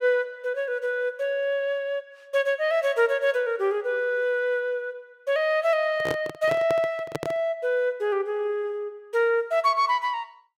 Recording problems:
handling noise; from 6 to 7.5 s; peak -1 dB vs average level

